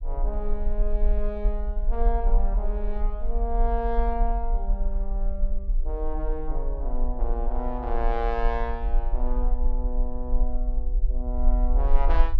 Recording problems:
rumble; below 40 Hz, strongest tone 22 Hz, SNR -5 dB

